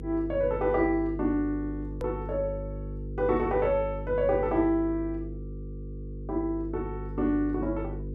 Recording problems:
hum; 50 Hz, harmonics up to 500 Hz, SNR 9 dB
edit click; at 2 s

